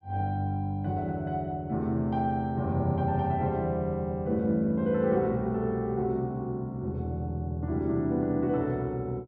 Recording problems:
none

